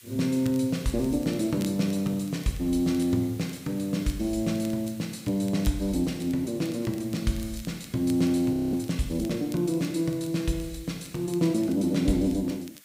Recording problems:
hiss; SNR 22 dB
crackle; vinyl, SNR 24 dB
audio freezing; at 8.5 s

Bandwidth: 15.5 kHz